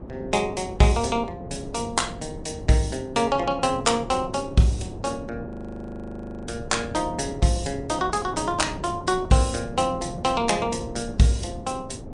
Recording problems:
lossy compression; MP3, log-spectral distance 4 dB
wind on the microphone; below 360 Hz, SNR 13 dB
frozen audio; at 5.5 s for 1 s

